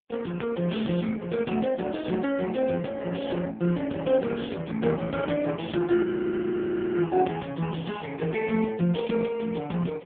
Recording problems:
phone line; 170 Hz to 3.4 kHz, AMR-NB
frozen audio; at 6 s for 1 s

